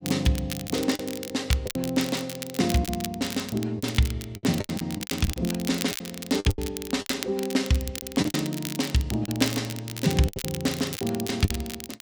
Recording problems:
crackle; vinyl, SNR 9 dB
lost packets; 11% of the sound replaced, filled with the last packet

